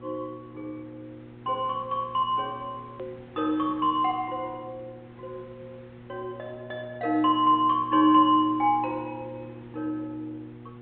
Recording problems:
treble missing; nothing above 4 kHz
hum; 60 Hz, harmonics up to 960 Hz, SNR 21 dB
background hiss; SNR 30 dB
edit click; at 3 s

